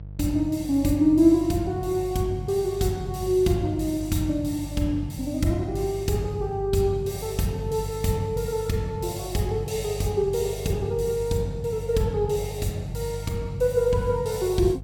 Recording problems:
electrical hum; 50 Hz, harmonics up to 500 Hz, SNR 12 dB

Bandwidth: 17 kHz